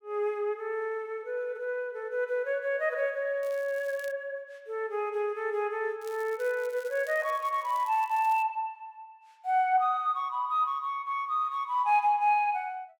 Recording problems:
crackle; at 3.5 s and from 6 to 8.5 s; loose cable, SNR 23 dB

